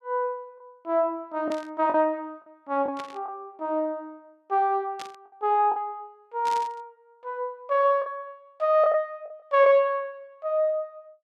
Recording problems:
packet loss; 3% of the sound replaced, filled with the last packet
static burst; 4 times, first at 1.5 s; peak -9 dB vs average level

